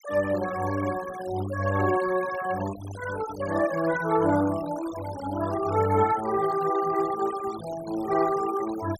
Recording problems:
denoising artefacts; signal-to-artefact ratio 15 dB

